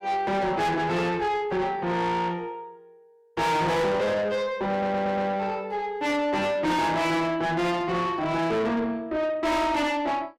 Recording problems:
distorted audio; soft clipping, signal-to-distortion ratio 7 dB
stutter; at 4.5 s

